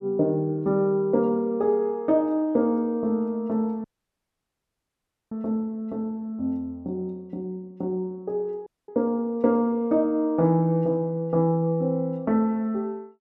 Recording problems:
dropout; at 4 s for 1.5 s and at 8.5 s

